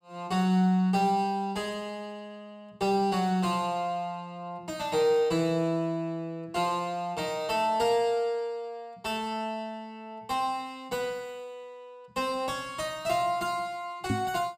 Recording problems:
microphone bump; at 14 s; peak +3 dB vs average level

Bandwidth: 15.5 kHz